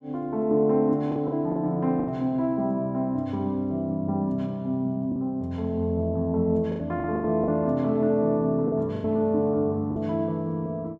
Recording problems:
lost packets; 6% of the sound replaced, filled with the last packet

